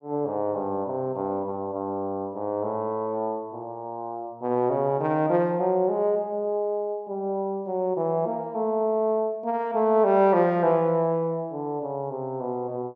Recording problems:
none

